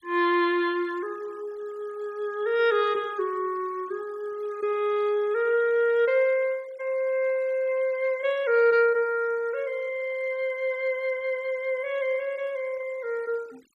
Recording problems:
denoising artefacts; signal-to-artefact ratio 26 dB

